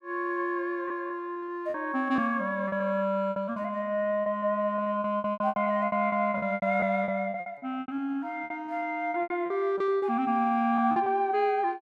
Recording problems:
lost packets; 15% of the sound replaced, filled with repeated pitch periods

